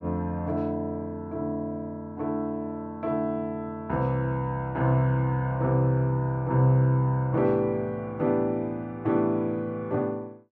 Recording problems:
none

